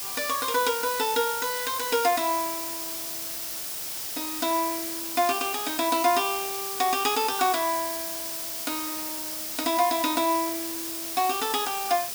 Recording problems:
background hiss; SNR 4 dB

